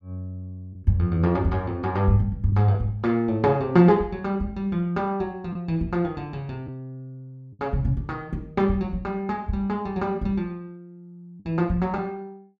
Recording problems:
packet loss; 1.6% of the sound replaced, filled with the last packet

